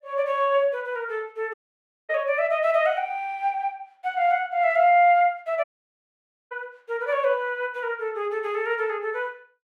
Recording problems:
audio cutting out; at 1.5 s for 0.5 s and at 5.5 s for 1 s

